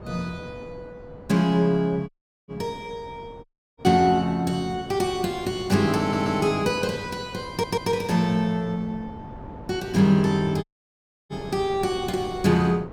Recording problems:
wind noise; below 510 Hz, SNR 18 dB
audio cutting out; at 2 s, at 3.5 s and at 11 s for 0.5 s
audio stuttering; at 6 s and at 7.5 s

